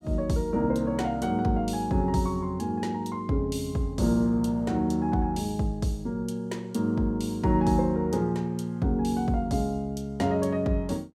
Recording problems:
none

